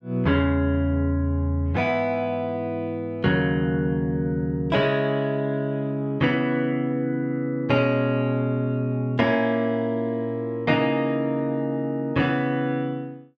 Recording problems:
none

